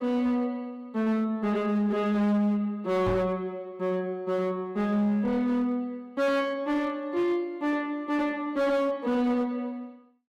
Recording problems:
distorted audio; hard clipping, signal-to-distortion ratio 11 dB
microphone bump; at 3 s; peak 0 dB vs average level

